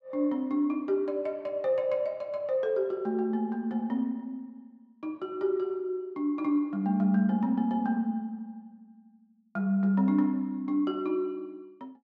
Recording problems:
none

